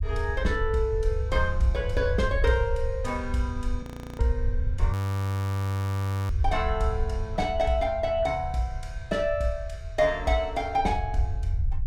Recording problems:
low-frequency rumble; below 98 Hz, SNR 3 dB
frozen audio; at 4 s and at 5 s for 1.5 s

